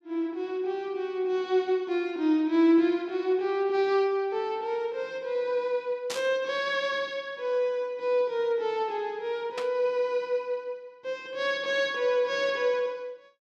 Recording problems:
burst of static; at 6 s and at 9.5 s; peak -3 dB vs average level

